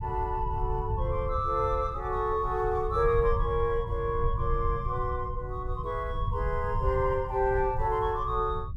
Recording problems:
low-frequency rumble; below 96 Hz, SNR 5 dB

